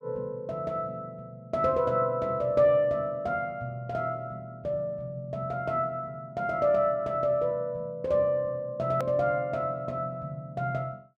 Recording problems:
click at an edit; at 9 s

